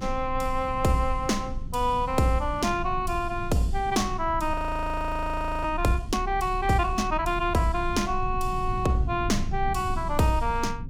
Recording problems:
rumble; below 82 Hz, strongest tone 20 Hz, SNR 9 dB
audio freezing; at 4.5 s for 1 s

